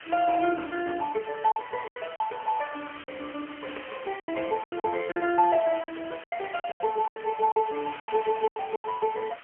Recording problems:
phone line; 240 Hz to 2.6 kHz, AMR-NB, then MP3
background hiss; SNR 16 dB
packet loss; 11% of the sound replaced, filled with silence

